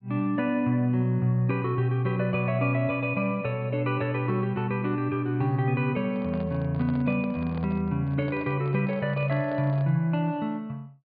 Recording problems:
treble missing; nothing above 4.8 kHz
microphone handling noise; from 6 to 10 s; peak -11 dB vs average level

